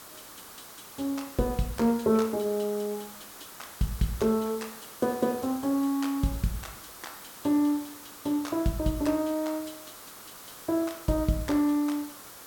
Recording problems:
hiss; SNR 15 dB

